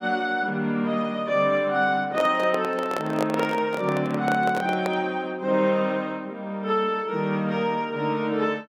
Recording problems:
handling noise; from 2 to 5 s; peak +2 dB vs average level

